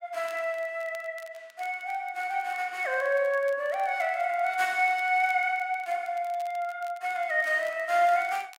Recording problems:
crackle; vinyl, SNR 27 dB

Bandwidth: 16 kHz